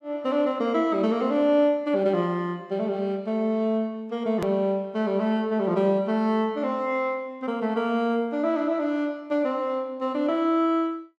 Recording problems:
click at an edit; at 4.5 s

